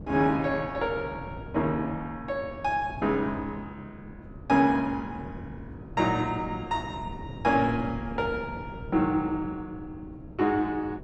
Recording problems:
wind noise; below 300 Hz, SNR 14 dB

